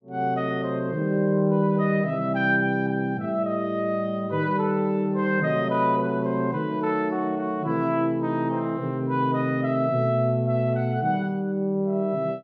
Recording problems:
low-pass filter; nothing above 6.8 kHz

